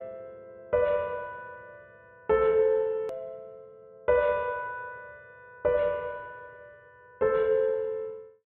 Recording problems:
low-pass filter; nothing above 4 kHz
edit click; at 3 s

